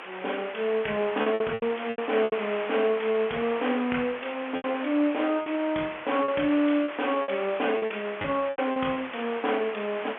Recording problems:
telephone audio; 320 Hz to 3.3 kHz, G.711
hiss; SNR 10 dB
lost packets; 9% of the sound replaced, filled with repeated pitch periods

